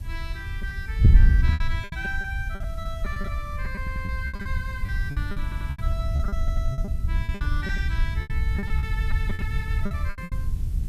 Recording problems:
hiss; slope -2 dB per octave, SNR 19 dB
wind noise; below 82 Hz, SNR -8 dB
lost packets; 16% of the sound replaced, filled with repeated pitch periods
stutter; at 4 s, at 5.5 s and at 6.5 s

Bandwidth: 14.5 kHz